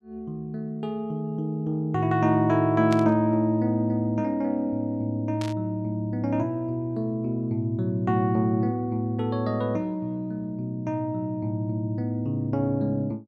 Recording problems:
static burst; at 3 s and at 5.5 s; peak -6 dB vs average level

